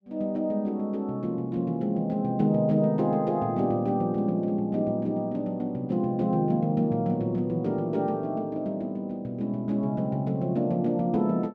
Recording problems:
none

